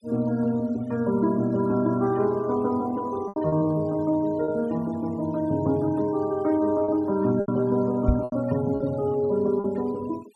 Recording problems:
noise reduction artefacts; signal-to-artefact ratio 25 dB
packet loss; 4% of the sound replaced, filled with repeated pitch periods
knock on the microphone; at 8 s; peak +6 dB vs average level

